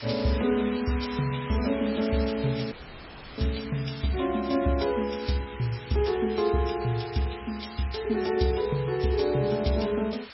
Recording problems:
codec artefacts; MP3, log-spectral distance 14 dB, nothing above 5.5 kHz
hiss; SNR 14 dB
dropout; at 2.5 s for 0.5 s

